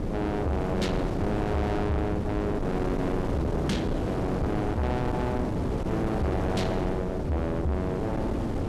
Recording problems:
distorted audio; soft clipping, signal-to-distortion ratio 8 dB
wind on the microphone; below 460 Hz, SNR 0 dB

